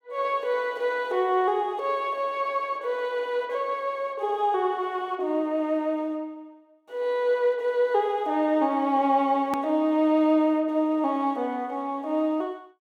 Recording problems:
edit click; at 9.5 s

